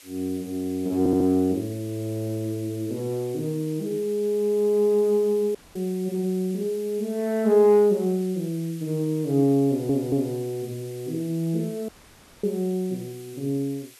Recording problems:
background hiss; slope +1 dB per octave, SNR 22 dB
audio stuttering; at 1 s and at 9.5 s
audio cutting out; at 5.5 s and at 12 s for 0.5 s

